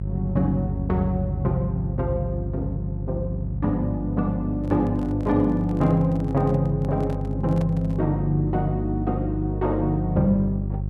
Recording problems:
hum; 50 Hz, harmonics up to 400 Hz, SNR 5 dB
microphone handling noise; from 4.5 to 8 s; peak -9 dB vs average level

